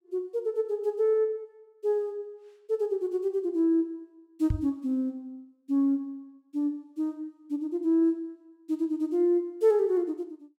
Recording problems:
knock on the microphone; at 4.5 s; peak +4 dB vs average level

